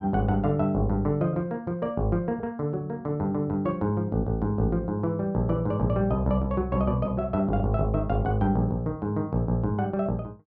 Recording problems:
none

